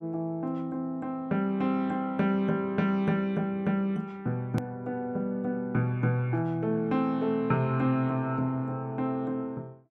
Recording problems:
click at an edit; at 4.5 s

